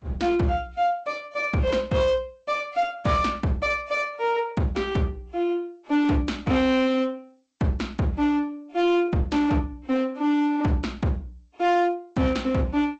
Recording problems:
lossy compression; Vorbis, then G.722, log-spectral distance 2 dB, nothing above 7.3 kHz
distortion; hard clipping, signal-to-distortion ratio 11 dB

